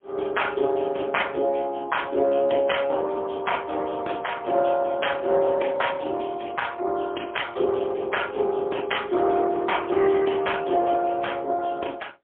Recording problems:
telephone audio; 240 Hz to 3.3 kHz, AMR-NB, then MP3

